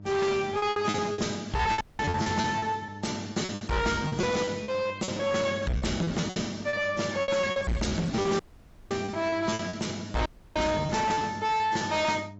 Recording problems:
lossy compression; AAC, log-spectral distance 5 dB, nothing above 7.6 kHz
distorted audio; hard clipping, uneven, signal-to-distortion ratio 6 dB
electrical hum; 50 Hz, harmonics up to 700 Hz, SNR 16 dB
packet loss; 15% of the sound replaced, filled with repeated pitch periods
dropout; at 2 s, at 8.5 s for 0.5 s and at 10 s

